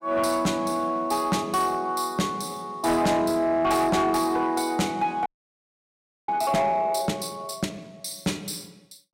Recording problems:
distorted audio; soft clipping, signal-to-distortion ratio 10 dB
audio freezing; at 5.5 s for 1 s

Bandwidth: 16 kHz